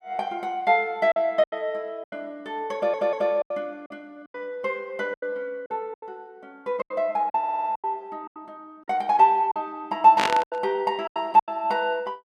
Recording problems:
lost packets; 11% of the sound replaced, filled with silence
stutter; at 3 s and at 7.5 s
burst of static; at 10 s; peak +5 dB vs average level

